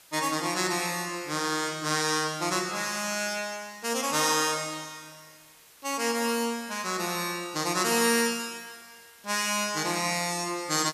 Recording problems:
hiss; slope 0 dB per octave, SNR 25 dB

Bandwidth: 14.5 kHz